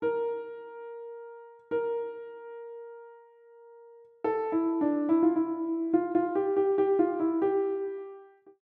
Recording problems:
none

